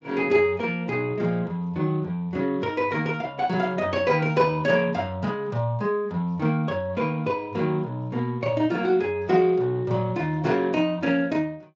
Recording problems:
codec artefacts; Speex, log-spectral distance 2 dB

